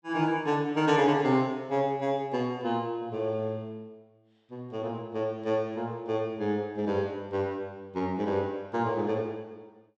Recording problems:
none

